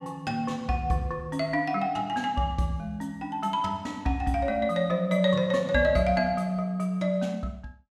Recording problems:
none

